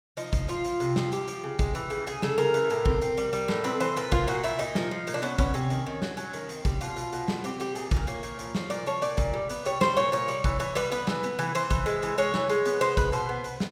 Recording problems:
none

